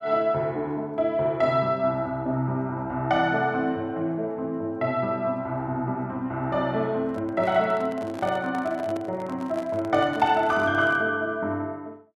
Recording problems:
handling noise; from 7 to 11 s; peak -8 dB vs average level

